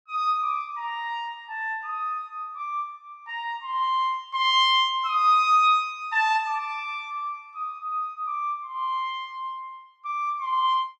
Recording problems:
none

